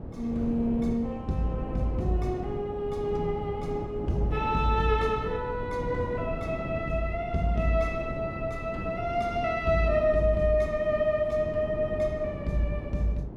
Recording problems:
wind noise; below 320 Hz, SNR 8 dB

